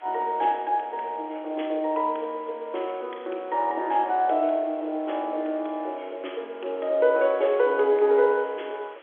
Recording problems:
telephone audio; 280 Hz to 3.5 kHz, G.711
hiss; SNR 25 dB

